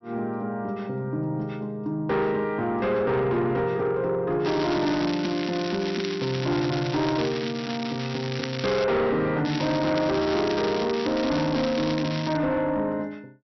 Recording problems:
treble missing; nothing above 5.8 kHz
distorted audio; soft clipping, signal-to-distortion ratio 10 dB
crackle; from 4.5 to 9 s and from 9.5 to 12 s; loose cable, SNR 9 dB

